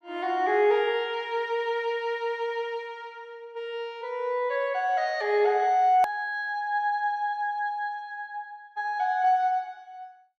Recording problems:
click at an edit; at 6 s

